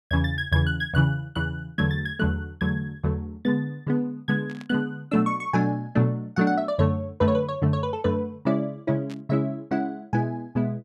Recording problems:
static burst; at 4.5 s and at 9 s; peak -15 dB vs average level

